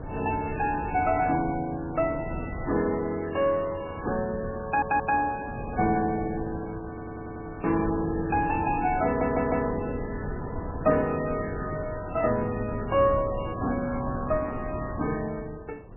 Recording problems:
codec artefacts; MP3, log-spectral distance 3 dB, nothing above 2.5 kHz
wind noise; below 360 Hz, SNR 10 dB
audio stuttering; at 4.5 s, at 7 s and at 9 s

